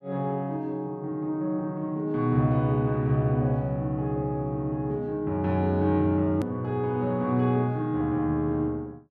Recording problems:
edit click; at 6.5 s

